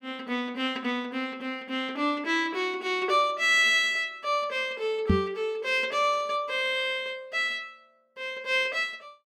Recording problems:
microphone thump; at 5 s; peak +7 dB vs average level

